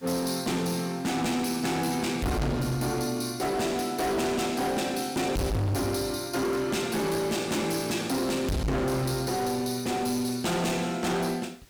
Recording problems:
distortion; hard clipping, signal-to-distortion ratio 6 dB
background hiss; SNR 28 dB

